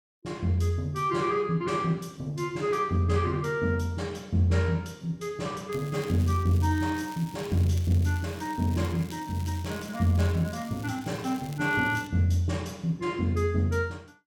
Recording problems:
crackling; from 5.5 to 12 s; loose cable, SNR 20 dB

